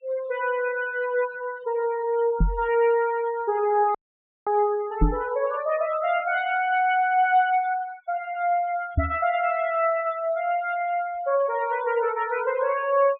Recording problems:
low-pass filter; nothing above 4 kHz
denoising artefacts; signal-to-artefact ratio 19 dB
microphone thump; at 2.5 s, at 5 s and at 9 s; peak +6 dB vs average level
dropout; at 4 s for 0.5 s

